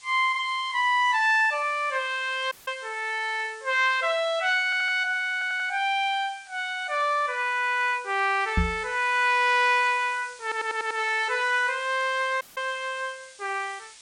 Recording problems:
lossy compression; MP3, log-spectral distance 4 dB
background hiss; slope +4 dB per octave, SNR 23 dB
audio cutting out; at 2.5 s and at 12 s
audio stuttering; at 4.5 s, at 5.5 s and at 10 s
microphone bump; at 8.5 s; peak +3 dB vs average level

